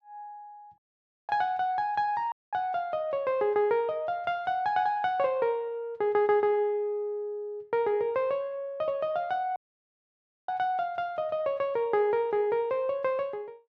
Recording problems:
dropout; at 1 s for 0.5 s, at 2.5 s and at 9.5 s for 1 s

